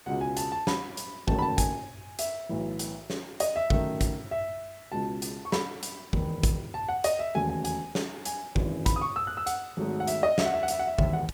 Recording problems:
hiss; slope -2 dB per octave, SNR 22 dB

